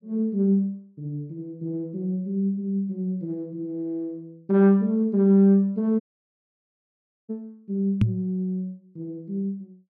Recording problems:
audio cutting out; at 6 s for 1.5 s
microphone bump; at 8 s; peak +7 dB vs average level

